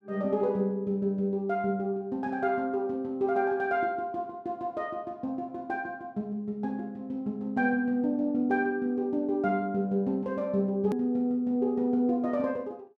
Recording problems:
click at an edit; at 11 s

